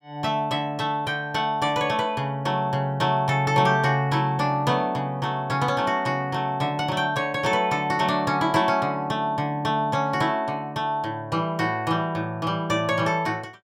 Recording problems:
none

